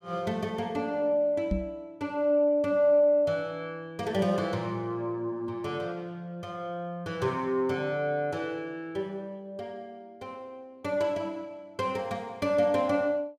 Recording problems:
knock on the microphone; at 1.5 s; peak +3 dB vs average level

